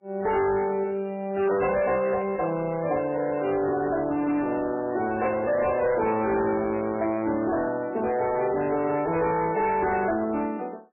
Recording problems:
lossy codec; MP3, log-spectral distance 4 dB, nothing above 2.4 kHz
distortion; hard clipping, uneven, signal-to-distortion ratio 10 dB

